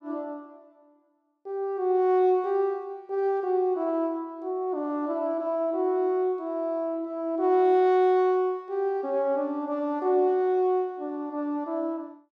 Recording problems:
none

